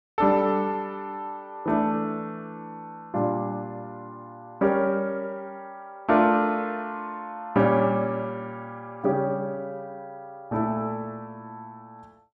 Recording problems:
none

